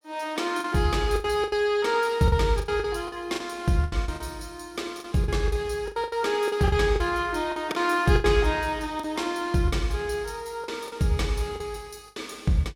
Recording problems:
lost packets; 11% of the sound replaced, filled with the last packet

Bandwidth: 16.5 kHz